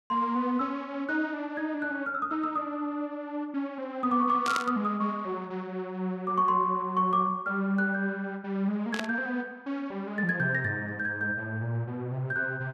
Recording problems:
static burst; at 4.5 s and at 9 s; peak 0 dB vs average level

